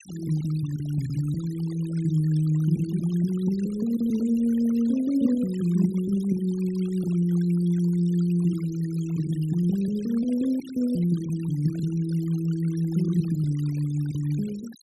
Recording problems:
noise reduction artefacts; signal-to-artefact ratio 22 dB

